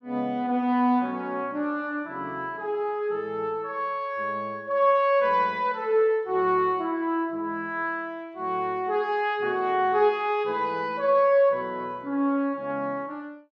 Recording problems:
none

